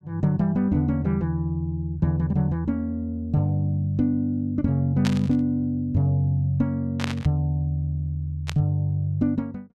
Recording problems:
static burst; at 5 s, at 7 s and at 8.5 s; peak -1 dB vs average level

